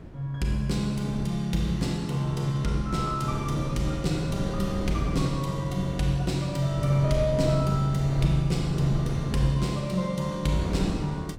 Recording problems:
wind noise; below 260 Hz, SNR 8 dB

